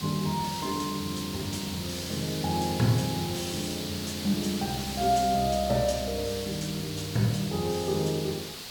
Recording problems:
background hiss; SNR 7 dB

